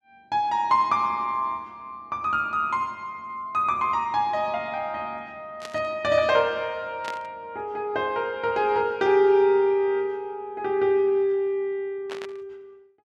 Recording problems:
burst of static; at 5.5 s, at 7 s and at 12 s; peak -7 dB vs average level

